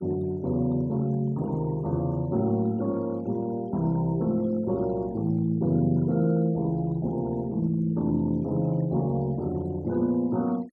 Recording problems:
noise reduction artefacts; signal-to-artefact ratio 26 dB

